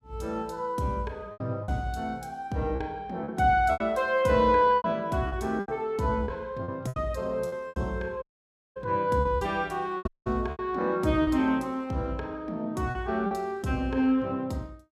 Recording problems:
lost packets; 8% of the sound replaced, filled with repeated pitch periods
audio cutting out; at 8 s for 0.5 s and at 10 s

